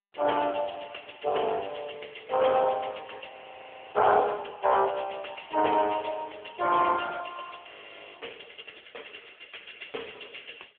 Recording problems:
telephone audio; 370 Hz to 3.3 kHz, AMR-NB
frozen audio; at 3.5 s for 0.5 s and at 7.5 s

